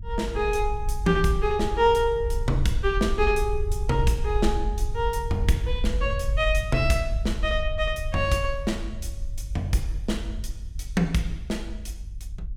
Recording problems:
rumble; below 60 Hz, SNR 5 dB

